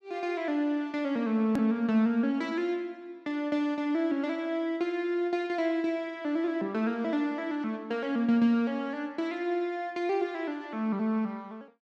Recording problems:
click at an edit; at 1.5 s

